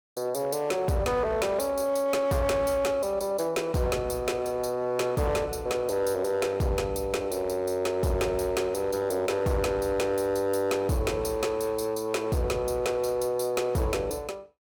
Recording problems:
distorted audio; hard clipping, signal-to-distortion ratio 11 dB

